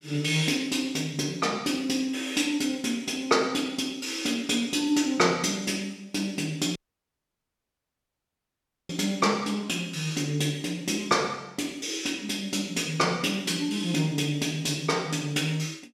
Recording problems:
audio cutting out; at 7 s for 2 s

